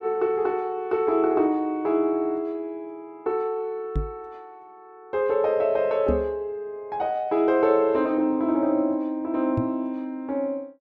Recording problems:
knock on the microphone; at 4 s, at 6 s and at 9.5 s; peak +2 dB vs average level

